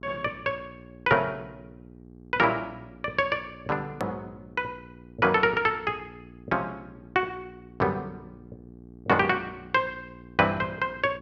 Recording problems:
hum; 60 Hz, harmonics up to 780 Hz, SNR 21 dB
edit click; at 4 s

